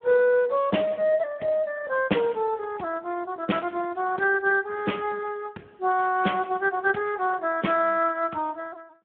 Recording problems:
telephone audio; 240 Hz to 2.9 kHz, Speex

